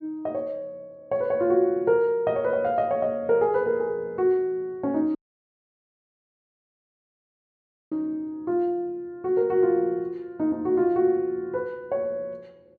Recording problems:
dropout; at 5 s for 3 s

